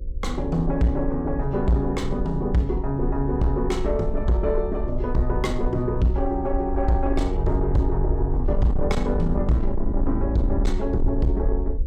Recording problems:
distortion; soft clipping, signal-to-distortion ratio 11 dB
electrical hum; 60 Hz, harmonics up to 540 Hz, SNR 23 dB
low-frequency rumble; below 56 Hz, SNR 4 dB

